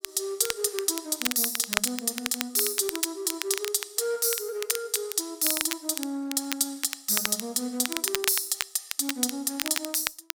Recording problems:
crackle; vinyl, SNR 6 dB

